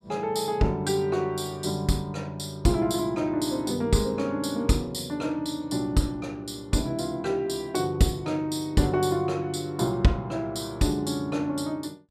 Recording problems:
none

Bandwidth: 14.5 kHz